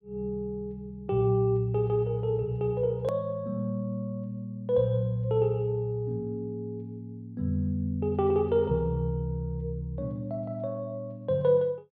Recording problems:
click at an edit; at 3 s

